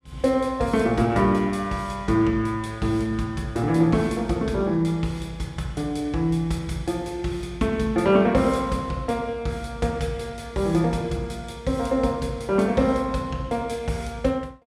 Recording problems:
none

